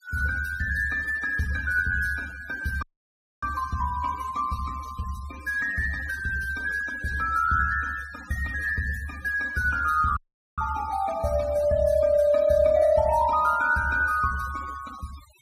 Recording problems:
noise reduction artefacts; signal-to-artefact ratio 20 dB
dropout; at 3 s for 0.5 s and at 10 s

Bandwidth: 15.5 kHz